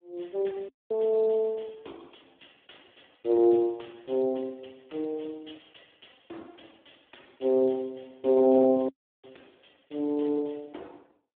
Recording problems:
telephone audio; 220 Hz to 3.6 kHz, Speex
dropout; at 0.5 s and at 9 s

